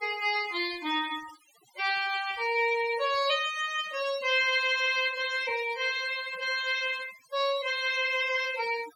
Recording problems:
denoising artefacts; signal-to-artefact ratio 16 dB

